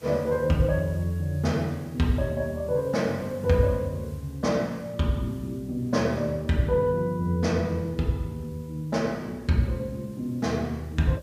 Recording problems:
background hiss; slope -3 dB per octave, SNR 27 dB

